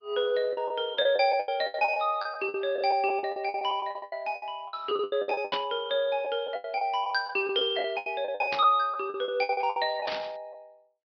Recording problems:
low-pass filter; nothing above 4.8 kHz
lossy compression; Opus, log-spectral distance 2 dB
packet loss; 19% of the sound replaced, filled with the last packet
burst of static; at 5.5 s, at 8.5 s and at 10 s; peak -3 dB vs average level

